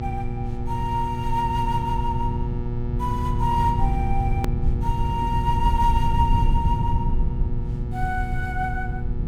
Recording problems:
electrical hum; 60 Hz, harmonics up to 1.3 kHz, SNR 5 dB
low-frequency rumble; below 100 Hz, SNR 0 dB
hard cut with a click; at 4.5 s

